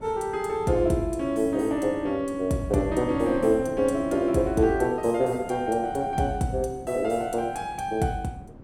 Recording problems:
wind noise; below 340 Hz, SNR 18 dB

